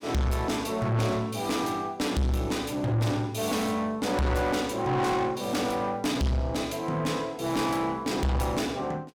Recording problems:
distortion; soft clipping, signal-to-distortion ratio 7 dB

